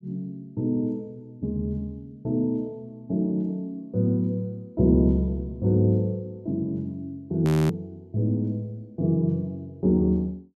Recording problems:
frozen audio; at 7.5 s

